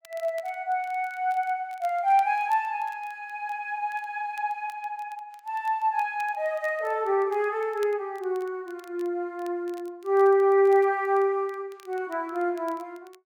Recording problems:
crackle; vinyl, SNR 29 dB

